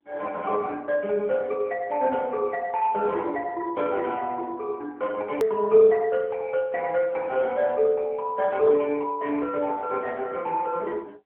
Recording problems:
phone line; 260 Hz to 3.2 kHz, AMR-NB
click at an edit; at 5.5 s

